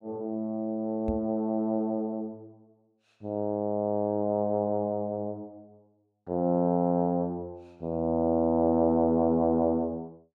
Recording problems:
microphone bump; at 1 s; peak -2 dB vs average level

